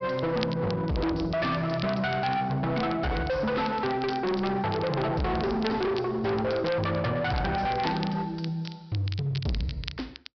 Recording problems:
treble cut off; nothing above 5.5 kHz
distorted audio; hard clipping, uneven, signal-to-distortion ratio 6 dB
crackling; vinyl, SNR 15 dB

